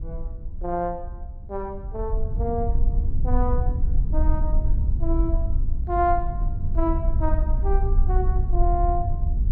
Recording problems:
wind on the microphone; below 60 Hz, SNR -4 dB

